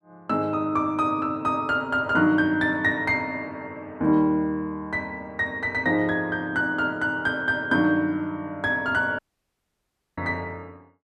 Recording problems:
audio cutting out; at 9 s for 1 s

